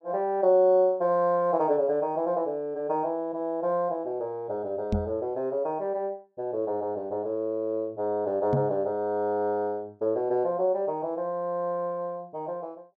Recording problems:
microphone thump; at 5 s and at 8.5 s; peak +4 dB vs average level

